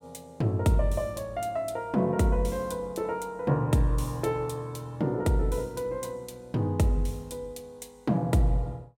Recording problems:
none

